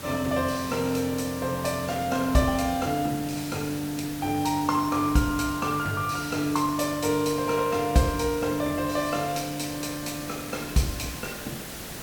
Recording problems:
hiss; SNR 11 dB

